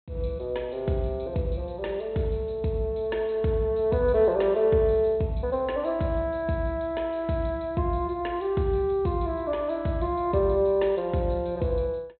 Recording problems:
treble cut off; nothing above 4 kHz

